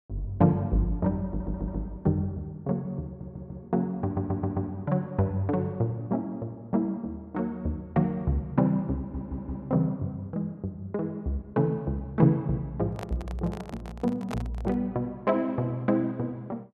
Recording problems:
audio stuttering; 4 times, first at 1.5 s
microphone handling noise; from 13 to 15 s; peak -3 dB vs average level

